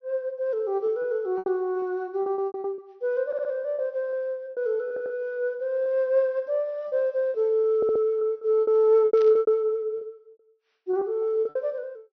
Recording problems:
low-pass filter; nothing above 6 kHz
lost packets; 11% of the sound replaced, filled with repeated pitch periods
audio stuttering; at 3.5 s, at 5 s and at 8 s
static burst; at 9 s; peak -15 dB vs average level

